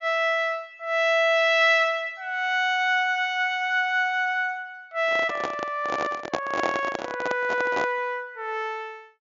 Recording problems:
treble cut off; nothing above 7.2 kHz
microphone handling noise; from 5 to 8 s; peak +2 dB vs average level

